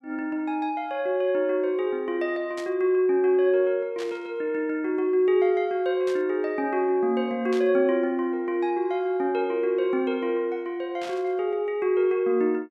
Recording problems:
static burst; 5 times, first at 2.5 s; peak -10 dB vs average level

